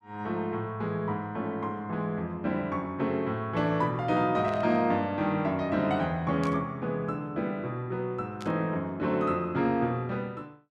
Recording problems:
static burst; at 4.5 s, at 6.5 s and at 8.5 s; peak -9 dB vs average level

